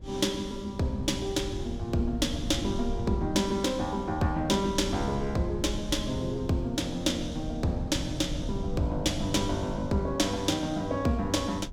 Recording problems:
wind on the microphone; below 120 Hz, SNR 9 dB

